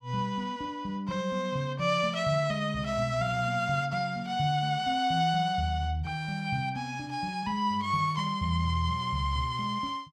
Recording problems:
none

